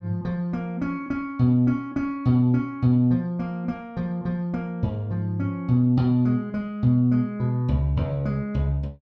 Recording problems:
none

